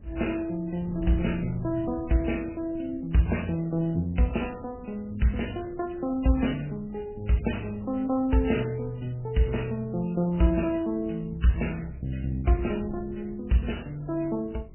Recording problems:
lossy compression; Vorbis, then MP3, log-spectral distance 4 dB, nothing above 3 kHz
wind on the microphone; below 170 Hz, SNR 17 dB

